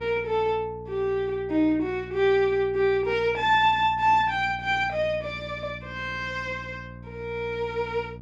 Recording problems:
hum; 60 Hz, harmonics up to 660 Hz, SNR 17 dB

